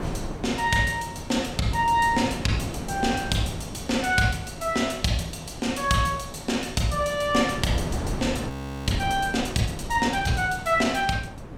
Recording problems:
wind on the microphone; below 480 Hz, SNR 10 dB
audio freezing; at 8.5 s

